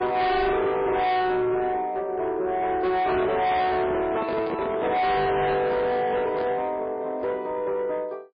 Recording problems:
lossy compression; MP3, log-spectral distance 2 dB, nothing above 4.5 kHz
distorted audio; soft clipping, signal-to-distortion ratio 7 dB
handling noise; from 3 to 6.5 s; peak -2 dB vs average level

